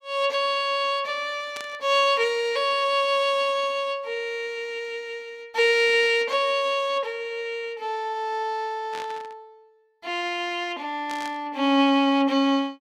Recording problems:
static burst; at 1.5 s, at 9 s and at 11 s; peak -9 dB vs average level

